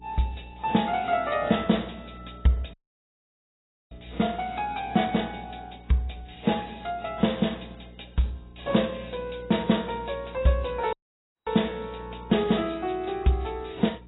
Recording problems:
codec artefacts; AAC, log-spectral distance 7 dB, nothing above 3.8 kHz
hum; 60 Hz, harmonics up to 420 Hz, SNR 20 dB
audio cutting out; at 2.5 s for 1 s and at 11 s for 0.5 s

